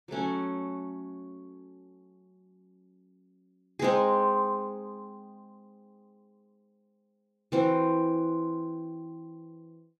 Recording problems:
none

